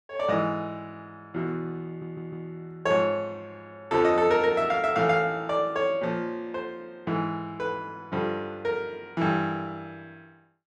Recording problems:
stutter; at 2 s

